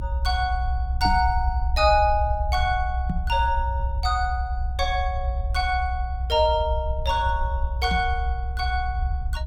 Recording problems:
low-frequency rumble; below 70 Hz, strongest tone 62 Hz, SNR 3 dB
microphone thump; at 1 s, at 3 s and at 8 s; peak +1 dB vs average level

